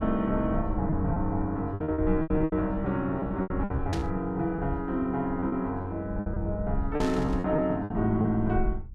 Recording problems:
rumble; below 80 Hz, SNR 9 dB
lost packets; 11% of the sound replaced, filled with repeated pitch periods
static burst; at 4 s and at 7 s; peak -5 dB vs average level

